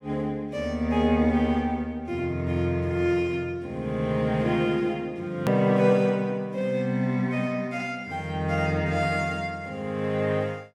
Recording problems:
click at an edit; at 5.5 s

